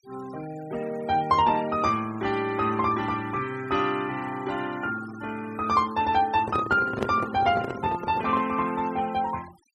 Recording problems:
denoising artefacts; signal-to-artefact ratio 18 dB
handling noise; from 6.5 to 8.5 s; peak +2 dB vs average level

